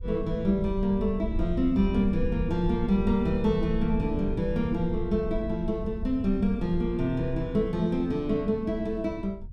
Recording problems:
low-frequency rumble; below 70 Hz, SNR 9 dB

